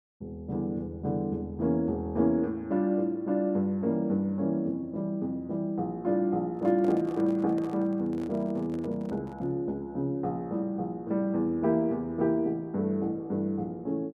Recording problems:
handling noise; from 6.5 to 9.5 s; peak -10 dB vs average level

